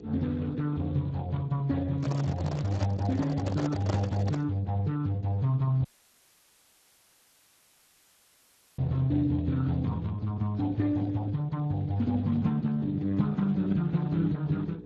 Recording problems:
codec artefacts; AAC, then Speex, log-spectral distance 2 dB
hum; 60 Hz, harmonics up to 480 Hz, SNR 17 dB
microphone handling noise; from 2 to 4.5 s; peak -2 dB vs average level
audio cutting out; at 6 s for 3 s

